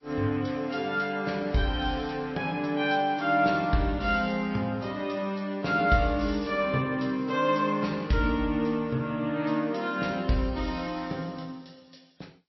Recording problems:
codec artefacts; G.722, then MP3, log-spectral distance 4 dB, nothing above 5.7 kHz

